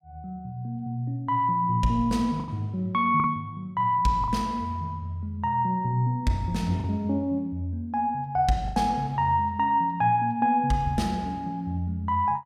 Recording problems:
packet loss; 2% of the sound replaced, filled with the last packet

